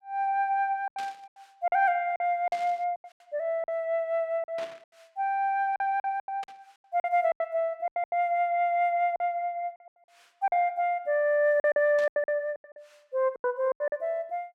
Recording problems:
lost packets; 12% of the sound replaced, filled with silence
static burst; 5 times, first at 1 s; peak -11 dB vs average level

